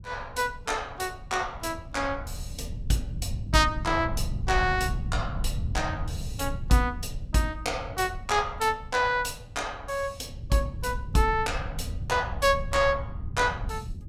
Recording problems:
low-frequency rumble; below 110 Hz, SNR 8 dB

